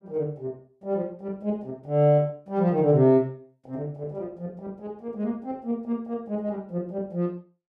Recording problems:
none

